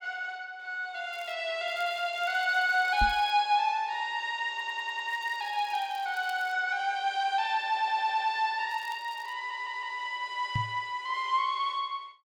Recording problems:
crackling; 4 times, first at 1 s; loose cable, SNR 25 dB
microphone bump; at 3 s and at 11 s; peak +2 dB vs average level
stutter; at 4.5 s, at 7.5 s and at 9.5 s

